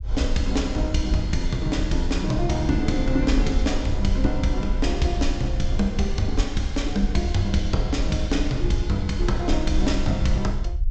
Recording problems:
low-pass filter; nothing above 8 kHz
low-frequency rumble; below 58 Hz, SNR 3 dB

